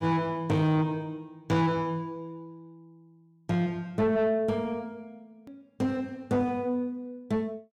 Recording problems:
distorted audio; soft clipping, signal-to-distortion ratio 9 dB
click at an edit; at 5.5 s

